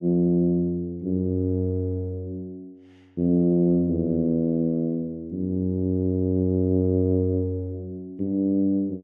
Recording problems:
none

